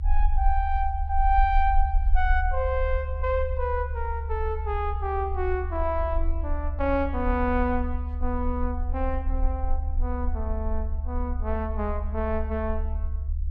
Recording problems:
low-frequency rumble; below 72 Hz, SNR 1 dB

